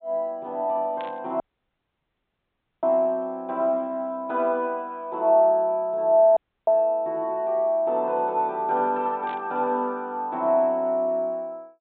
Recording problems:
treble missing; nothing above 4 kHz
burst of static; at 1 s and at 9.5 s; peak -14 dB vs average level
audio cutting out; at 1.5 s for 1.5 s and at 6.5 s

